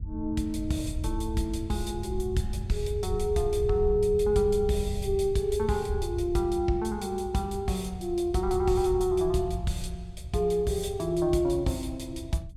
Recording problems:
rumble; below 92 Hz, SNR 9 dB

